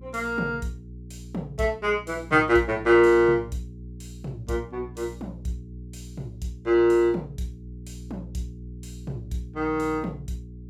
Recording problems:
hum; 60 Hz, harmonics up to 420 Hz, SNR 18 dB

